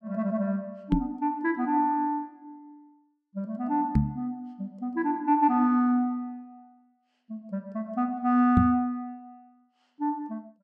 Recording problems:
microphone bump; at 1 s, at 4 s and at 8.5 s; peak +8 dB vs average level

